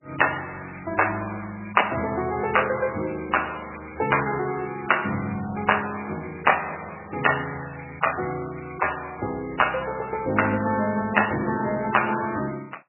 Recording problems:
codec artefacts; MP3, log-spectral distance 15 dB, nothing above 2.9 kHz

